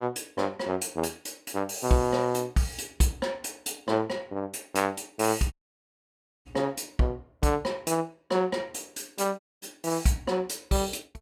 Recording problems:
audio cutting out; at 5.5 s for 1 s and at 9.5 s

